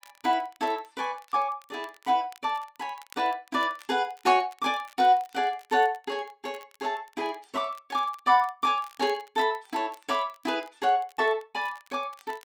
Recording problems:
crackle; vinyl, SNR 28 dB

